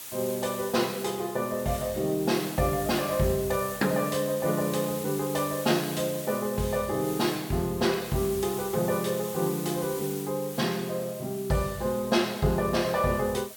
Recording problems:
hiss; slope 0 dB per octave, SNR 11 dB

